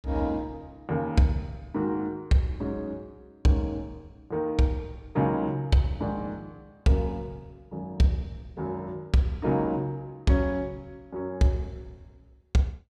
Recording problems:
none

